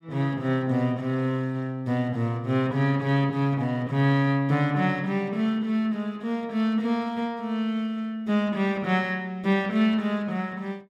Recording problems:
none

